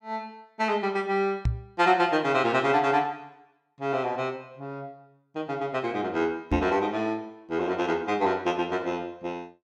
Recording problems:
microphone thump; at 1.5 s and at 6.5 s; peak +4 dB vs average level

